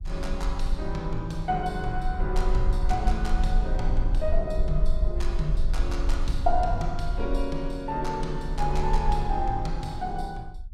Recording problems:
rumble; below 44 Hz, strongest tone 18 Hz, SNR 0 dB

